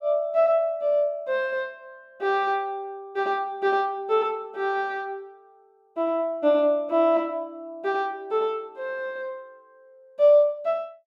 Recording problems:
none

